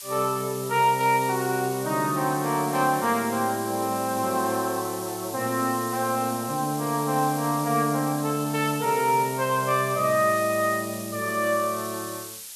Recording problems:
background hiss; slope +4 dB per octave, SNR 11 dB

